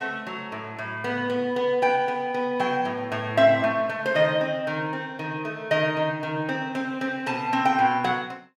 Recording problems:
none

